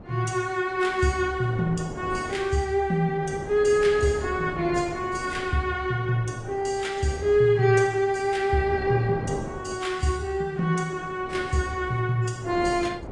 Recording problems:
codec artefacts; AAC, log-spectral distance 2 dB
wind noise; below 530 Hz, SNR 16 dB

